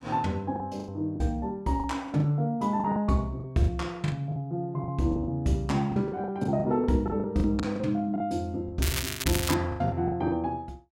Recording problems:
packet loss; 14% of the sound replaced, filled with the last packet
crackle; at 9 s; loose cable, SNR 3 dB

